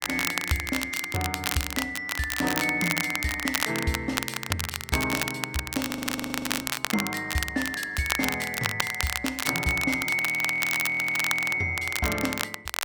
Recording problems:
crackling; vinyl, SNR 3 dB
frozen audio; at 6 s for 1 s and at 10 s for 1.5 s

